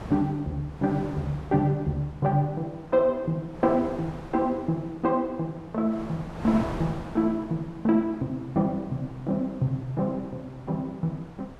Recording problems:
wind on the microphone; below 850 Hz, SNR 14 dB

